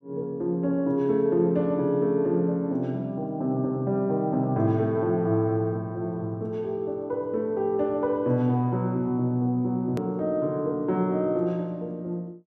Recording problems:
edit click; at 10 s

